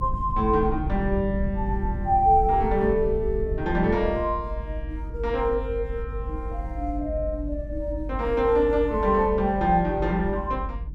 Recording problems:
low-frequency rumble; below 76 Hz, strongest tone 48 Hz, SNR 8 dB

